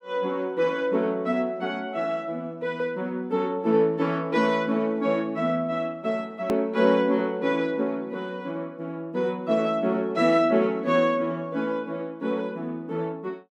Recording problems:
hard cut with a click; at 6.5 s

